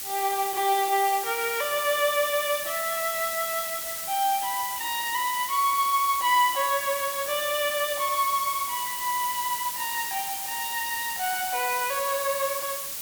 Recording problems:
hiss; slope +2 dB per octave, SNR 4 dB

